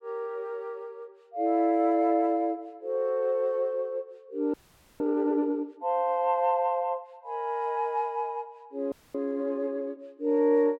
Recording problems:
audio freezing; at 4.5 s and at 9 s

